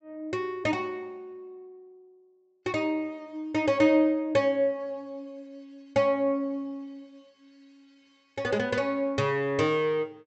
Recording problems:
treble cut off; nothing above 8 kHz

